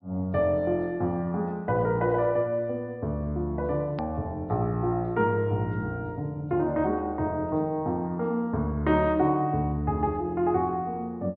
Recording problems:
treble missing; nothing above 5.5 kHz
click at an edit; at 4 s

